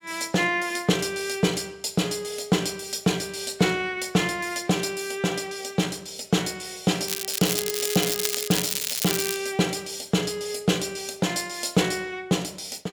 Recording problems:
crackling; from 7 to 9.5 s; loose cable, SNR 1 dB

